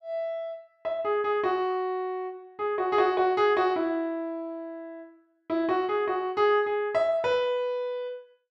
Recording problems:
none

